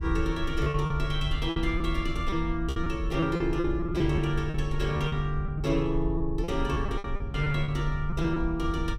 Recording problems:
wind noise; below 66 Hz, SNR 5 dB
lost packets; 11% of the sound replaced, filled with repeated pitch periods

